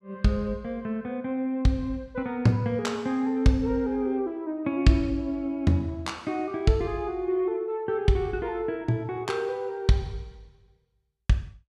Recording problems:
none

